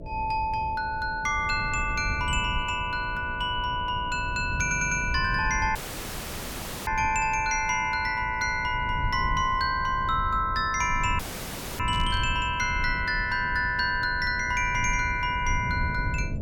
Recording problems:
hum; 60 Hz, harmonics up to 660 Hz, SNR 21 dB
low-frequency rumble; below 120 Hz, SNR 10 dB
audio stuttering; at 4.5 s
dropout; at 6 s for 1 s and at 11 s for 0.5 s
static burst; at 12 s; peak -13 dB vs average level

